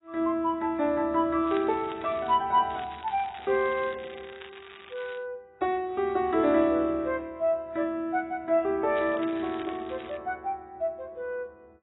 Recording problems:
lossy compression; AAC, log-spectral distance 4 dB
crackling; at 1.5 s, from 2.5 to 5 s and from 9 to 10 s; loose cable, SNR 20 dB

